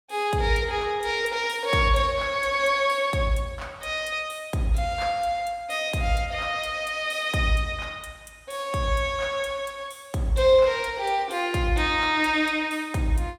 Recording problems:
none

